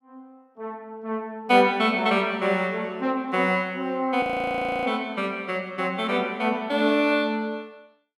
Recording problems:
audio freezing; at 4 s for 0.5 s

